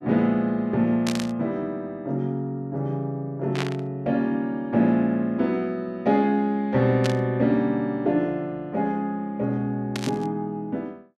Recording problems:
burst of static; 4 times, first at 1 s; peak -1 dB vs average level

